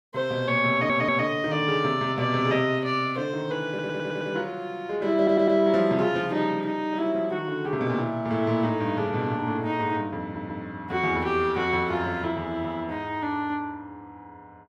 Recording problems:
stutter; 4 times, first at 0.5 s

